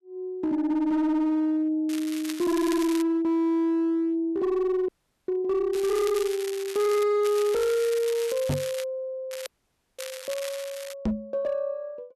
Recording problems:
distorted audio; hard clipping, uneven, signal-to-distortion ratio 10 dB
crackling; 4 times, first at 2 s; loose cable, SNR 13 dB
audio freezing; at 5 s and at 9.5 s for 0.5 s
knock on the microphone; at 8.5 s and at 11 s; peak +3 dB vs average level

